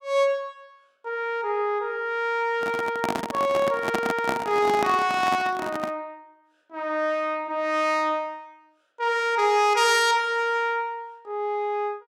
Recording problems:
microphone handling noise; from 2.5 to 6 s; peak +2 dB vs average level

